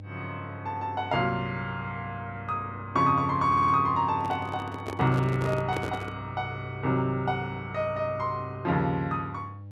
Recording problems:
hum; 50 Hz, harmonics up to 600 Hz, SNR 14 dB
stutter; at 3.5 s
microphone handling noise; from 4 to 6 s; peak -1 dB vs average level

